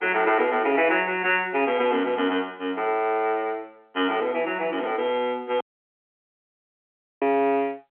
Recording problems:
phone line; 220 Hz to 3.2 kHz, G.711
dropout; at 5.5 s for 1.5 s

